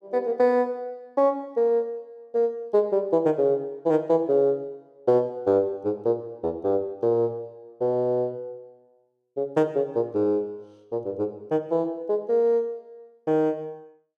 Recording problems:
none

